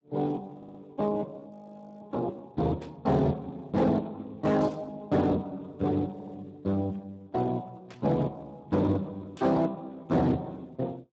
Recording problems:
lossy codec; Speex, log-spectral distance 3 dB, nothing above 7.6 kHz
distorted audio; hard clipping, signal-to-distortion ratio 11 dB
stutter; at 0.5 s and at 6 s
audio freezing; at 1.5 s for 0.5 s
static burst; 4 times, first at 3 s; peak -15 dB vs average level

